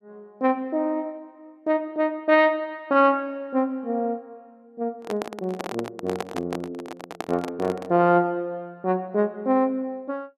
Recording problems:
handling noise; from 5 to 8 s; peak -1 dB vs average level

